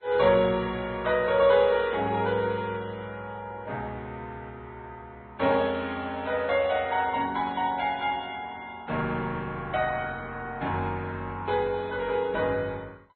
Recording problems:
lossy compression; Vorbis, then MP2, log-spectral distance 2 dB, nothing above 3.6 kHz

